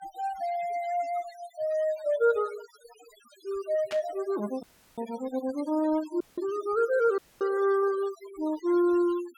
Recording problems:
noise reduction artefacts; signal-to-artefact ratio 20 dB
static burst; at 4 s; peak -6 dB vs average level
audio cutting out; at 4.5 s, at 6 s and at 7 s

